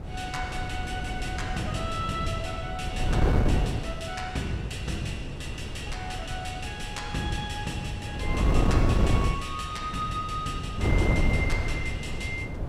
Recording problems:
wind noise; below 220 Hz, SNR -3 dB

